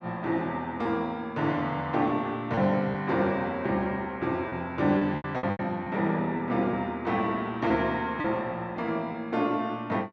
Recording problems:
lost packets; 5% of the sound replaced, filled with repeated pitch periods

